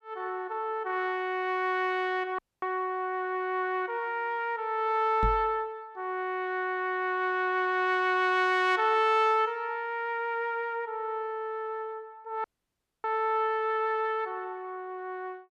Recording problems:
audio cutting out; at 2.5 s and at 12 s for 0.5 s
knock on the microphone; at 5 s; peak +1 dB vs average level

